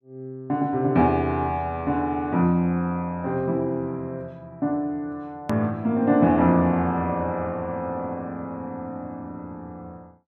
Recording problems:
click at an edit; at 5.5 s

